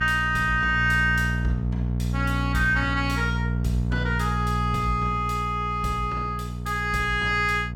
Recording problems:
hum; 60 Hz, harmonics up to 660 Hz, SNR 3 dB

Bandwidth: 17 kHz